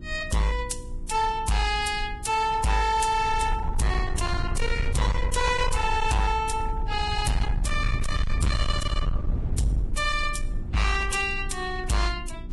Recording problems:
lossy compression; Vorbis, log-spectral distance 3 dB, nothing above 10.7 kHz
distorted audio; hard clipping, signal-to-distortion ratio 7 dB
electrical hum; 60 Hz, harmonics up to 360 Hz, SNR 20 dB
rumble; below 80 Hz, SNR 6 dB

